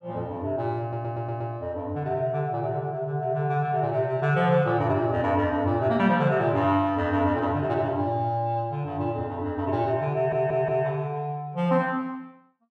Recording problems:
audio stuttering; at 1 s and at 10 s

